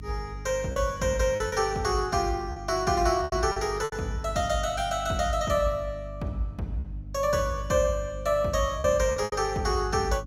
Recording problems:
hum; 50 Hz, harmonics up to 300 Hz, SNR 13 dB
lost packets; 6% of the sound replaced, filled with repeated pitch periods

